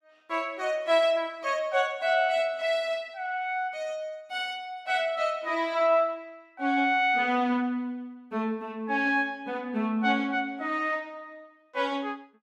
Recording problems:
none

